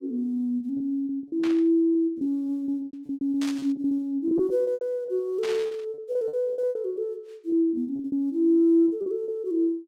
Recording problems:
packet loss; 18% of the sound replaced, filled with repeated pitch periods
static burst; at 1.5 s, at 3.5 s and at 5.5 s; peak -7 dB vs average level

